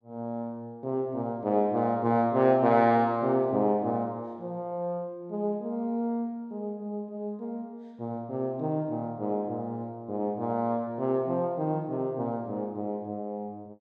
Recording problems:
none

